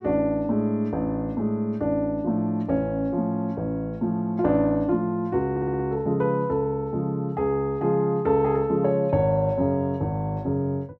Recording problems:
stutter; at 5.5 s

